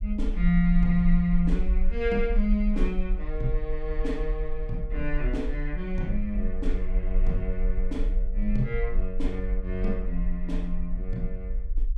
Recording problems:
rumble; below 42 Hz, strongest tone 22 Hz, SNR 1 dB

